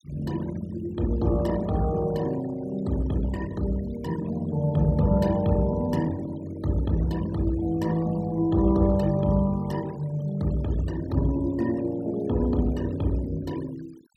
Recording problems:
noise reduction artefacts; signal-to-artefact ratio 21 dB

